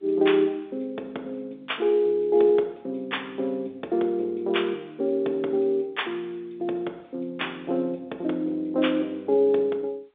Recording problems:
telephone audio; 280 Hz to 3.6 kHz, G.711

